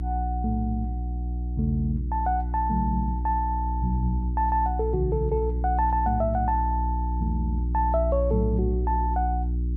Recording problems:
electrical hum; 60 Hz, harmonics up to 360 Hz, SNR 1 dB

